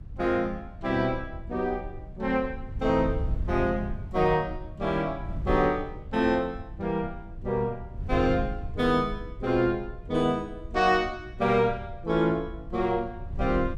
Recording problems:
wind on the microphone; below 96 Hz, SNR 11 dB

